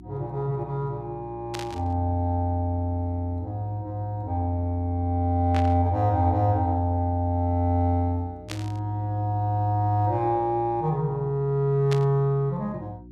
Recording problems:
hum; 60 Hz, harmonics up to 360 Hz, SNR 20 dB
burst of static; 4 times, first at 1.5 s; peak -4 dB vs average level

